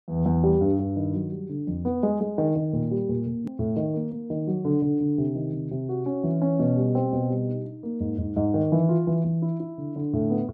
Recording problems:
edit click; at 3.5 s

